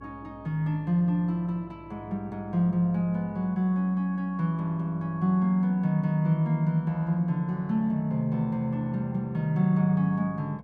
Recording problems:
mains hum; 60 Hz, harmonics up to 600 Hz, SNR 28 dB

